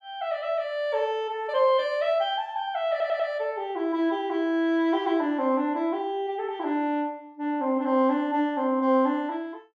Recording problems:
audio stuttering; at 3 s

